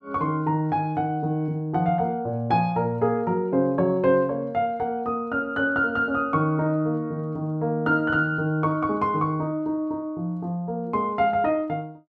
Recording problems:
none

